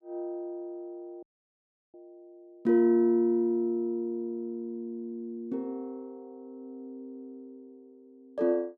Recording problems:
audio cutting out; at 1 s for 0.5 s

